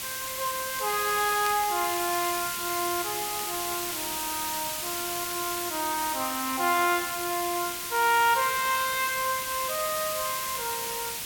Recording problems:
background hiss; slope +1 dB per octave, SNR 2 dB
crackle; vinyl, SNR 23 dB

